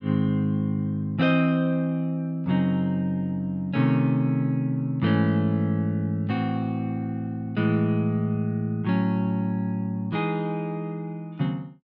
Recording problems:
none

